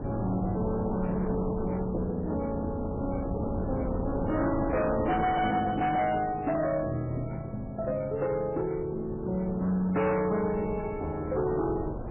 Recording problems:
lossy codec; MP3, log-spectral distance 2 dB, nothing above 3 kHz
distorted audio; hard clipping, signal-to-distortion ratio 11 dB
wind on the microphone; below 460 Hz, SNR 7 dB

